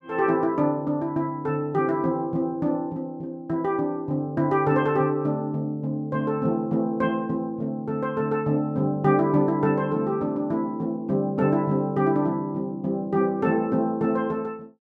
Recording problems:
none

